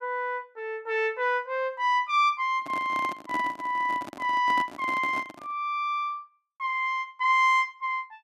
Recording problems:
handling noise; from 2.5 to 5.5 s; peak -5 dB vs average level

